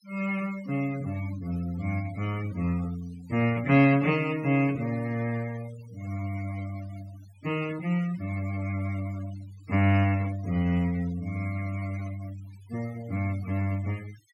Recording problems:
denoising artefacts; signal-to-artefact ratio 19 dB

